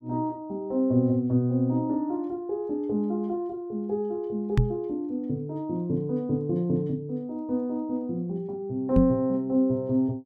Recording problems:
microphone bump; at 4.5 s and at 9 s; peak +8 dB vs average level

